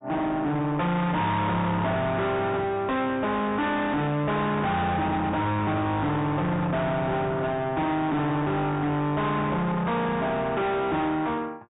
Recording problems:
low-pass filter; nothing above 3.8 kHz
distortion; soft clipping, signal-to-distortion ratio 6 dB

